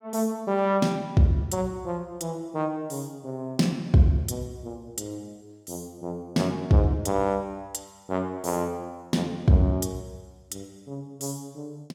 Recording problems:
none

